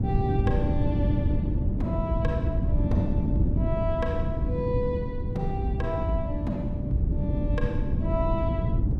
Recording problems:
wind noise; below 170 Hz, SNR -4 dB

